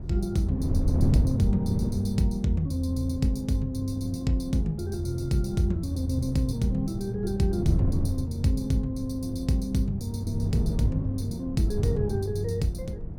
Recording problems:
wind noise; below 170 Hz, SNR 5 dB

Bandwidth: 17 kHz